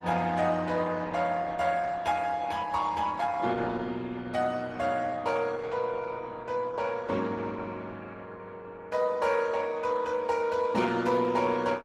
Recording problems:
lossy codec; Opus, log-spectral distance 3 dB, nothing above 15.6 kHz

